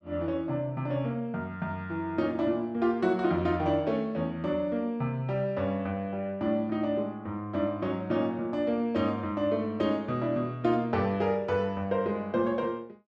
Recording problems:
none

